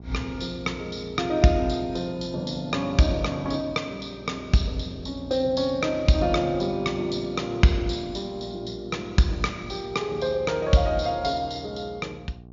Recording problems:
treble missing; nothing above 7.1 kHz
electrical hum; 60 Hz, harmonics up to 840 Hz, SNR 19 dB

